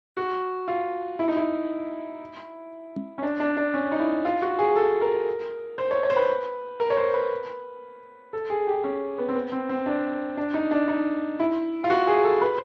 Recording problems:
lossy codec; Speex, then MP2, log-spectral distance 2 dB
microphone thump; at 3 s; peak -3 dB vs average level

